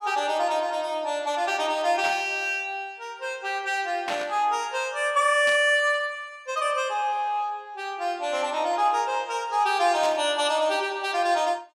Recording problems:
static burst; 4 times, first at 2 s; peak -3 dB vs average level

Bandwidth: 16.5 kHz